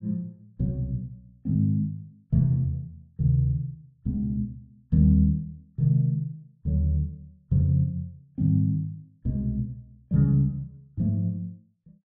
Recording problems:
none

